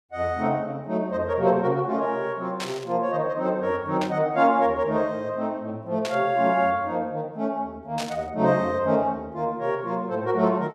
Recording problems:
burst of static; 4 times, first at 2.5 s; peak -3 dB vs average level

